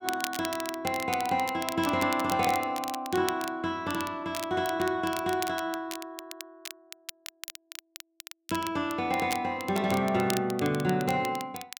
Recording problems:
crackle; vinyl, SNR 11 dB

